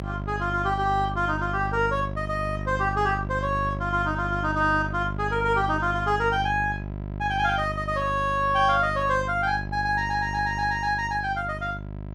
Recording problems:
electrical hum; 50 Hz, harmonics up to 1 kHz, SNR 8 dB

